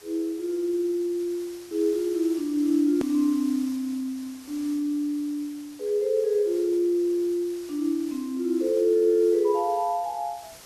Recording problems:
background hiss; slope -1 dB per octave, SNR 21 dB
click at an edit; at 3 s

